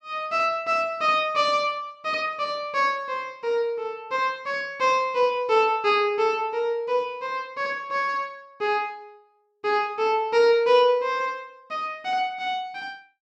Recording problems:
none

